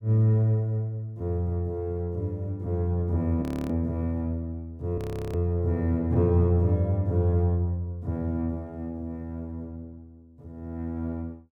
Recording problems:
frozen audio; at 3.5 s and at 5 s

